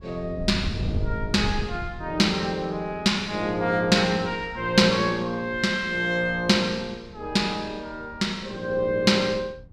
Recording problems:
wind on the microphone; below 130 Hz, SNR 12 dB

